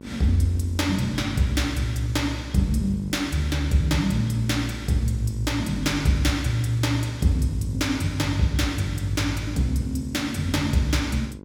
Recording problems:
hum; 50 Hz, harmonics up to 1.1 kHz, SNR 18 dB

